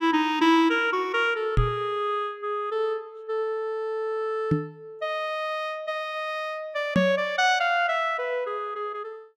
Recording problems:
knock on the microphone; at 1.5 s, at 4.5 s and at 7 s; peak +6 dB vs average level

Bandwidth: 15 kHz